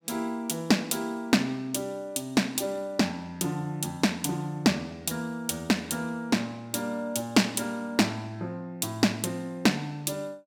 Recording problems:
none

